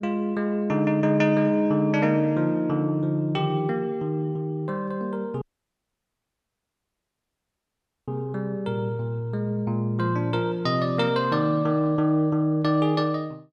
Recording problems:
audio cutting out; at 5.5 s for 2.5 s

